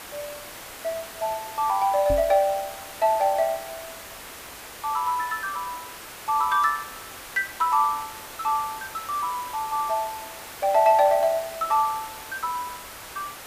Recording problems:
background hiss; slope -2 dB per octave, SNR 13 dB
microphone bump; at 2 s; peak -3 dB vs average level

